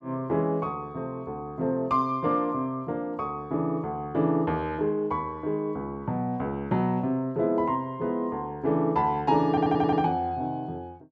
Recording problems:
audio stuttering; at 9.5 s

